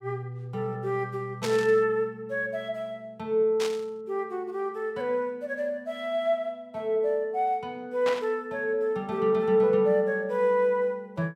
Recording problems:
static burst; at 1.5 s, at 3.5 s and at 8 s; peak -2 dB vs average level

